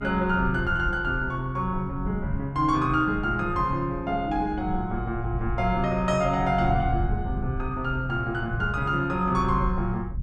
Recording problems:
low-frequency rumble; below 100 Hz, SNR 9 dB

